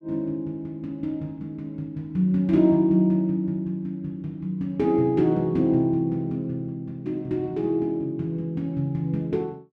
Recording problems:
none

